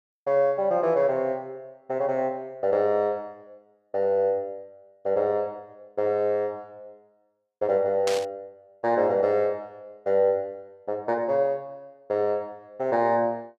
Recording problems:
burst of static; at 8 s; peak -2 dB vs average level

